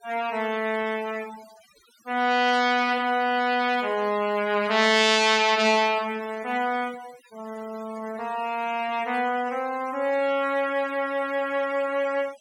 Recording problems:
noise reduction artefacts; signal-to-artefact ratio 21 dB

